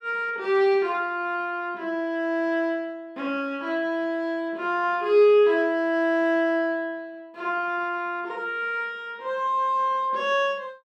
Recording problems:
none

